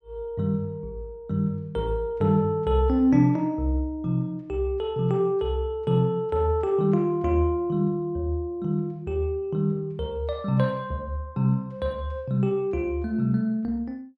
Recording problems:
none

